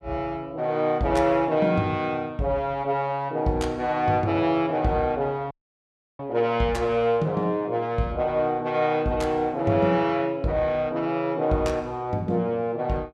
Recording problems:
dropout; at 5.5 s for 0.5 s

